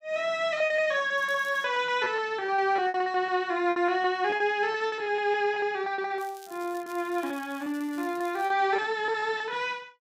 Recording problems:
packet loss; 14% of the sound replaced, filled with repeated pitch periods
crackle; at 1 s and from 6 to 8.5 s; loose cable, SNR 24 dB

